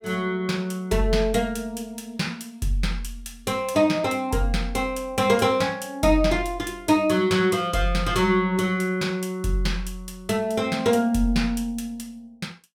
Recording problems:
none

